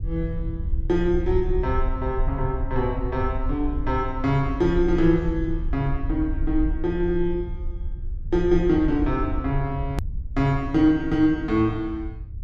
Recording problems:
low-frequency rumble; below 66 Hz, SNR 7 dB
edit click; at 10 s

